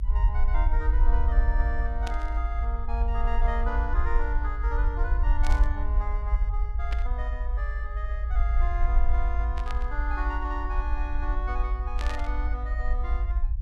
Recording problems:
low-frequency rumble; below 54 Hz, SNR -8 dB
static burst; 5 times, first at 2 s; peak +1 dB vs average level

